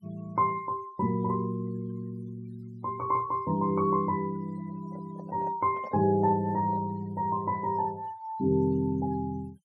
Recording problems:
noise reduction artefacts; signal-to-artefact ratio 25 dB
microphone handling noise; from 4.5 to 7 s; peak -10 dB vs average level

